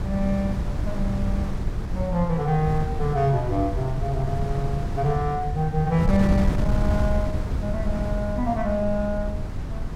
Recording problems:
wind noise; below 140 Hz, SNR 2 dB

